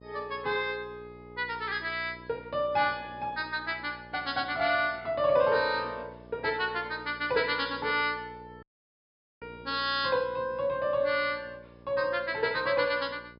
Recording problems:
treble missing; nothing above 5.5 kHz
hum; 60 Hz, harmonics up to 1.1 kHz, SNR 22 dB
dropout; at 8.5 s for 1 s

